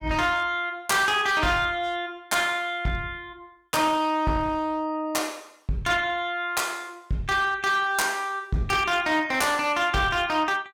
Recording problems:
distorted audio; hard clipping, uneven, signal-to-distortion ratio 11 dB

